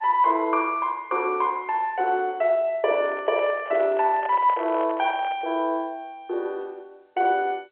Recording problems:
phone line; 300 Hz to 3.3 kHz, G.711
handling noise; from 3 to 5.5 s; peak -6 dB vs average level

